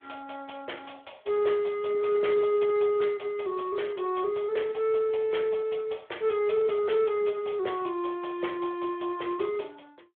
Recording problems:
telephone audio; 340 Hz to 3.5 kHz, Speex

